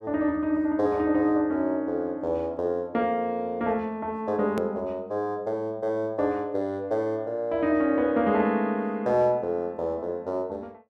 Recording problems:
click at an edit; at 4.5 s

